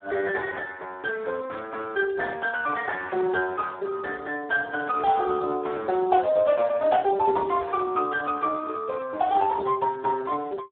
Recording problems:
telephone audio; 320 Hz to 3 kHz, Speex

